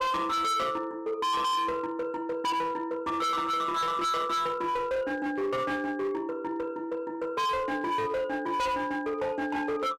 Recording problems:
distorted audio; hard clipping, signal-to-distortion ratio 6 dB

